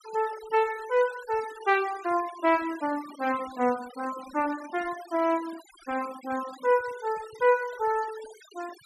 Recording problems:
noise reduction artefacts; signal-to-artefact ratio 17 dB

